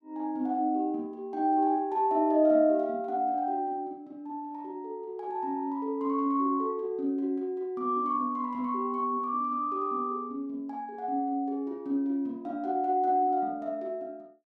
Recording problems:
none

